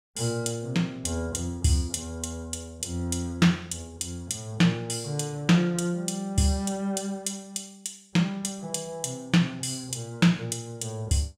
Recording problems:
none

